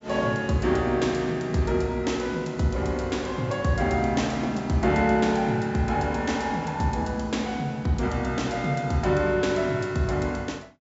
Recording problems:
treble cut off; nothing above 8 kHz

